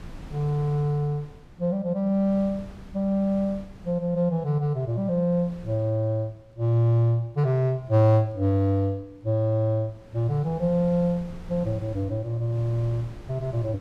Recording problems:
wind on the microphone; below 270 Hz, SNR 21 dB

